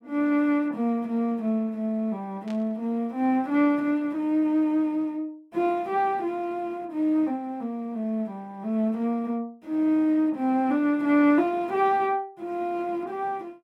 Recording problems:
burst of static; at 2.5 s; peak -15 dB vs average level

